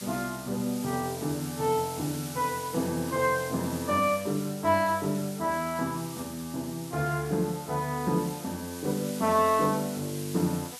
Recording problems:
hiss; slope +3 dB per octave, SNR 12 dB

